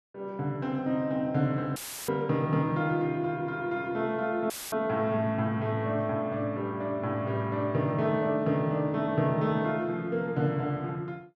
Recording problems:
dropout; at 2 s and at 4.5 s; filled with static

